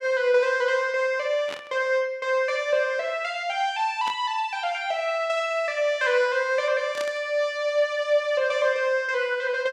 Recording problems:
static burst; at 1.5 s, at 4 s and at 7 s; peak -7 dB vs average level

